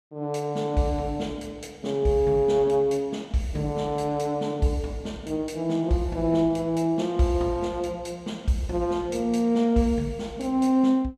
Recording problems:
none

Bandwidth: 14.5 kHz